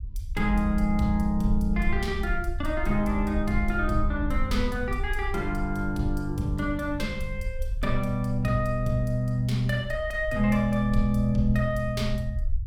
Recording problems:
rumble; below 60 Hz, SNR 7 dB

